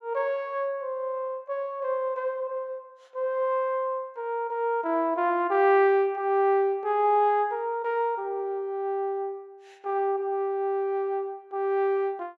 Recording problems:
none

